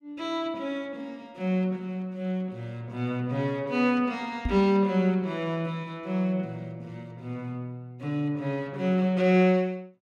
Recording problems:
microphone bump; at 4.5 s; peak +1 dB vs average level

